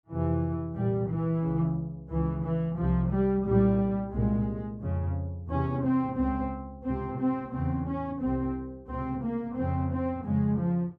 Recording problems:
none

